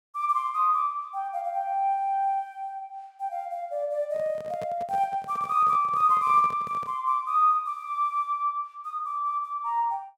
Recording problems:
microphone handling noise; from 4 to 7 s; peak -10 dB vs average level

